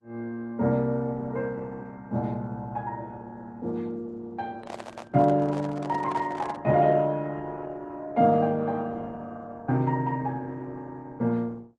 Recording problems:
codec artefacts; Vorbis, then Opus, log-spectral distance 2 dB
microphone handling noise; from 4.5 to 6.5 s; peak -5 dB vs average level

